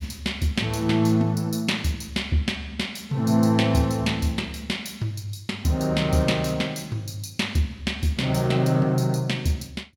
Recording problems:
none

